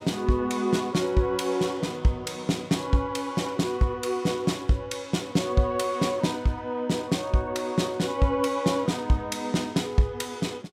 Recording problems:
none

